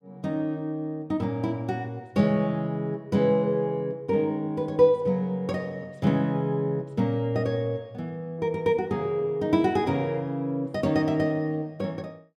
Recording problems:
none

